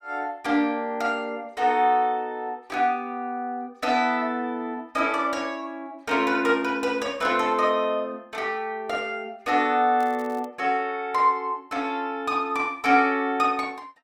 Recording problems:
crackle; at 10 s; loose cable, SNR 28 dB

